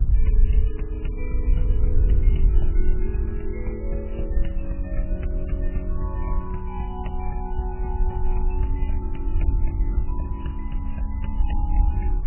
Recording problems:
lossy codec; MP3, log-spectral distance 2 dB, nothing above 3 kHz
background hiss; SNR 19 dB
rumble; below 60 Hz, SNR -8 dB

